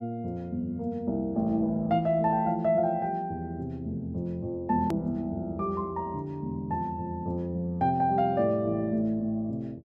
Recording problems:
hard cut with a click; at 5 s

